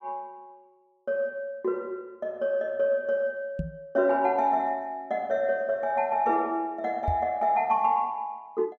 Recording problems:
microphone thump; at 3.5 s and at 7 s; peak +1 dB vs average level

